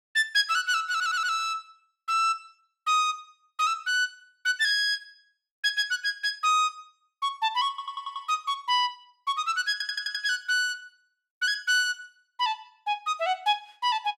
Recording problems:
audio stuttering; at 1 s, at 7.5 s and at 9.5 s

